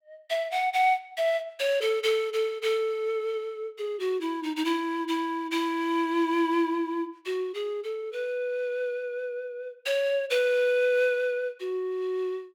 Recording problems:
none

